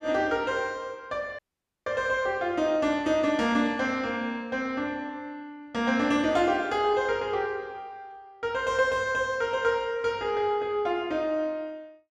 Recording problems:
audio cutting out; at 1.5 s

